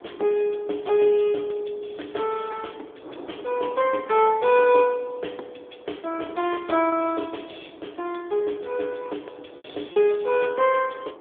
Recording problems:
phone line; 260 Hz to 3.4 kHz, AMR-NB
wind noise; below 700 Hz, SNR 21 dB
lost packets; 1.5% of the sound replaced, filled with repeated pitch periods

